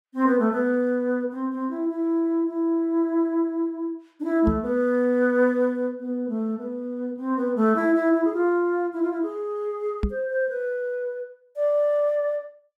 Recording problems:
knock on the microphone; at 4.5 s and at 10 s; peak +3 dB vs average level

